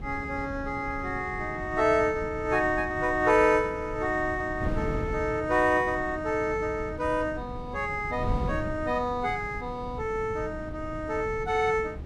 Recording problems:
wind noise; below 200 Hz, SNR 11 dB

